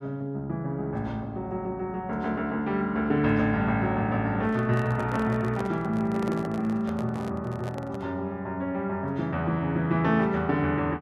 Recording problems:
handling noise; from 4.5 to 8 s; peak -6 dB vs average level

